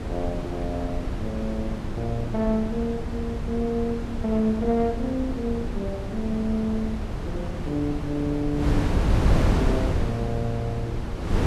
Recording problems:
wind on the microphone; below 240 Hz, SNR 1 dB

